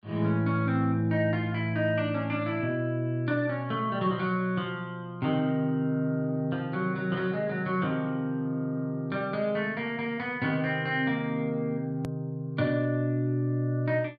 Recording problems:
hard cut with a click; at 12 s

